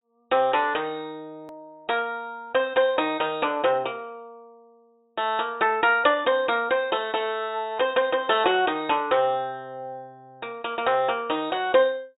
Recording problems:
treble cut off; nothing above 4 kHz
edit click; at 1.5 s

